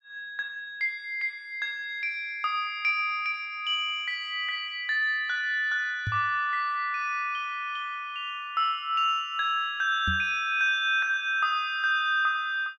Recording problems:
knock on the microphone; at 6 s and at 10 s; peak -2 dB vs average level

